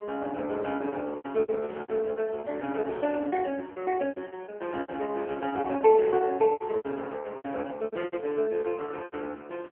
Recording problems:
telephone audio; 300 Hz to 3.3 kHz, AMR-NB
packet loss; 17% of the sound replaced, filled with repeated pitch periods

